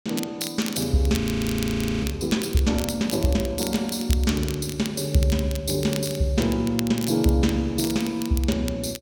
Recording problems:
crackle; vinyl, SNR 13 dB
frozen audio; at 1 s for 1 s

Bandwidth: 17 kHz